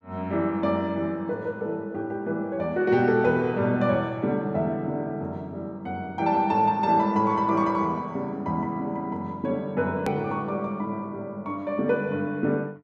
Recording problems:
hard cut with a click; at 10 s

